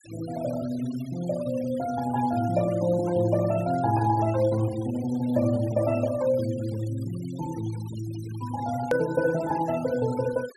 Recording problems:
denoising artefacts; signal-to-artefact ratio 19 dB
edit click; at 9 s

